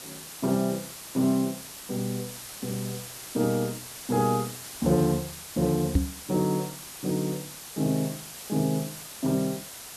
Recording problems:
hiss; slope 0 dB per octave, SNR 10 dB
knock on the microphone; at 6 s; peak +9 dB vs average level

